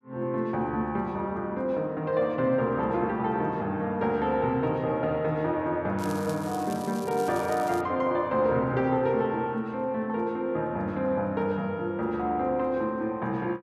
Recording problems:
crackling; from 6 to 8 s; loose cable, SNR 18 dB

